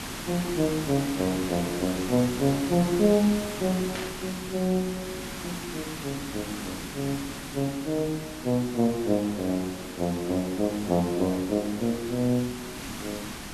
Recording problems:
hiss; SNR 8 dB
static burst; at 4 s; peak -5 dB vs average level

